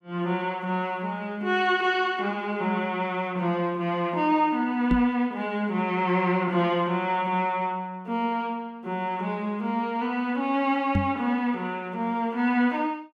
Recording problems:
knock on the microphone; at 5 s and at 11 s; peak +6 dB vs average level

